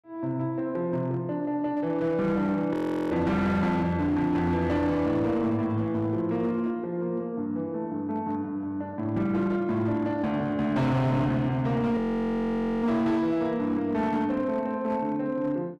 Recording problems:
distorted audio; hard clipping, signal-to-distortion ratio 12 dB
frozen audio; at 2.5 s and at 12 s for 1 s

